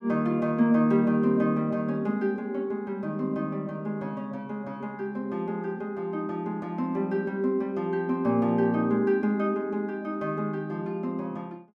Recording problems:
none

